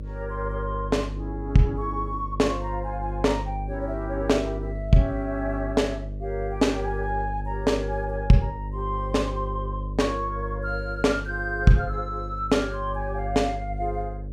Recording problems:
electrical hum; 50 Hz, harmonics up to 550 Hz, SNR 7 dB

